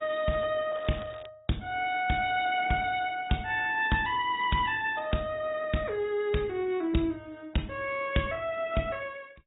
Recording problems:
treble cut off; nothing above 3.7 kHz
codec artefacts; Opus, log-spectral distance 3 dB
crackling; at 0.5 s; loose cable, SNR 27 dB

